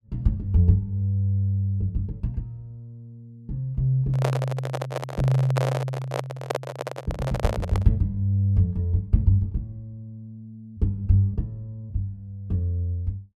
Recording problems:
microphone handling noise; from 4 to 8 s; peak +2 dB vs average level

